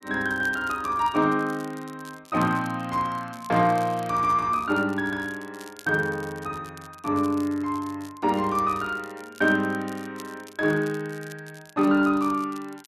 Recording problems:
crackle; vinyl, SNR 23 dB

